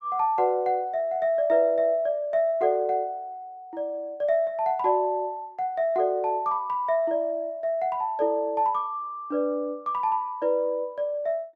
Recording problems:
none

